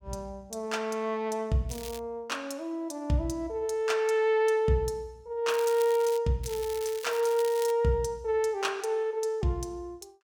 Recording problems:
crackling; at 1.5 s, at 5.5 s and from 6.5 to 7.5 s; loose cable, SNR 14 dB

